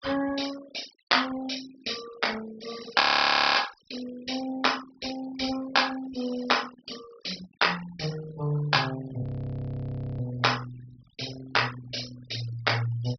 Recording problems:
treble cut off; nothing above 5.5 kHz
noise reduction artefacts; signal-to-artefact ratio 16 dB
audio freezing; at 3 s for 0.5 s and at 9 s for 1 s

